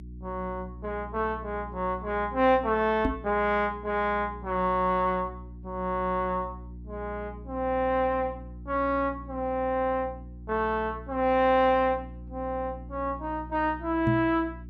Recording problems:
hum; 60 Hz, harmonics up to 360 Hz, SNR 15 dB
microphone thump; at 3 s and at 14 s; peak +4 dB vs average level

